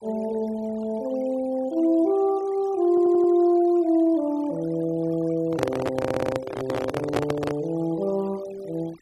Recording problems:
denoising artefacts; signal-to-artefact ratio 22 dB
stutter; at 3 s and at 6 s
microphone handling noise; from 5.5 to 7.5 s; peak +2 dB vs average level

